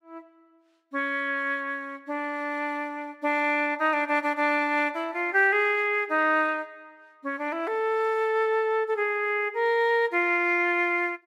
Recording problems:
none

